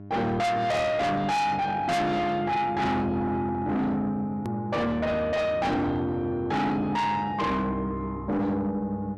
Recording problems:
distorted audio; soft clipping, signal-to-distortion ratio 6 dB
hum; 50 Hz, harmonics up to 800 Hz, SNR 17 dB
hard cut with a click; at 4.5 s

